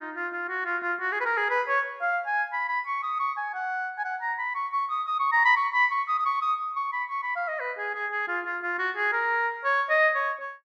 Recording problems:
none

